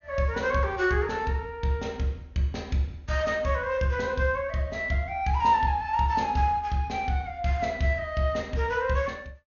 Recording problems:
low-pass filter; nothing above 6.7 kHz

